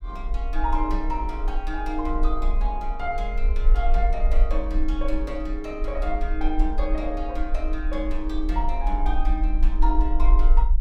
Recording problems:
low-frequency rumble; below 42 Hz, strongest tone 24 Hz, SNR -3 dB

